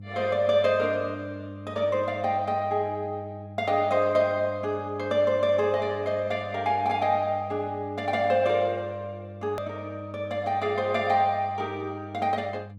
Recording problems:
hum; 50 Hz, harmonics up to 500 Hz, SNR 16 dB
click at an edit; at 9.5 s

